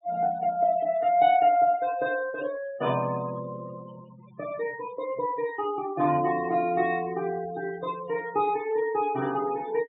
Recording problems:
low-pass filter; nothing above 4 kHz
denoising artefacts; signal-to-artefact ratio 19 dB

